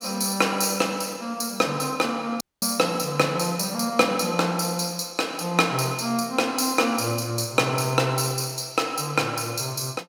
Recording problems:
dropout; at 2.5 s

